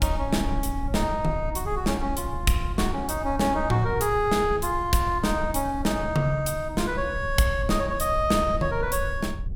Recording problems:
low-frequency rumble; below 74 Hz, SNR 9 dB

